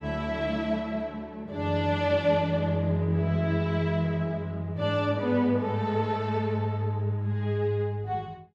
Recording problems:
none

